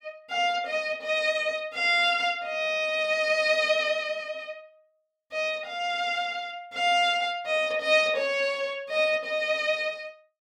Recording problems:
none

